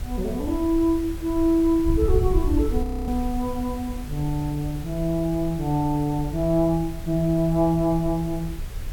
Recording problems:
hiss; slope -3 dB per octave, SNR 19 dB
wind on the microphone; below 74 Hz, SNR 8 dB
audio freezing; at 3 s

